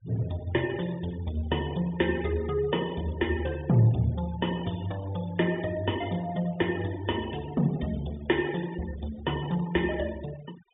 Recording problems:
treble cut off; nothing above 3.7 kHz
denoising artefacts; signal-to-artefact ratio 17 dB

